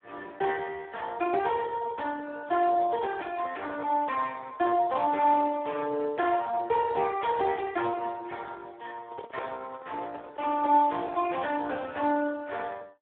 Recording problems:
telephone audio; 300 Hz to 3.5 kHz, Speex
microphone handling noise; from 9 to 12 s; peak -9 dB vs average level

